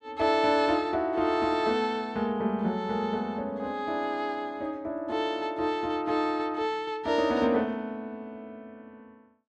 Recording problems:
none

